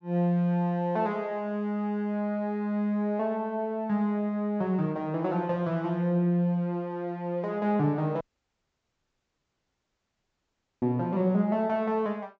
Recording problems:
treble cut off; nothing above 8 kHz
audio cutting out; at 8 s for 2.5 s

